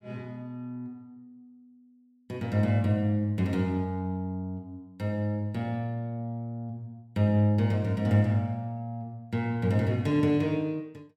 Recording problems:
none

